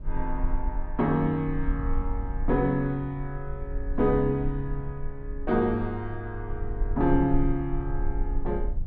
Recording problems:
low-frequency rumble; below 48 Hz, strongest tone 22 Hz, SNR 6 dB

